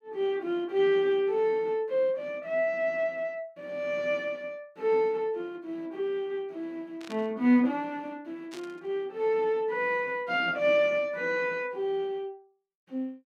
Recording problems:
burst of static; at 7 s and at 8.5 s; peak -11 dB vs average level

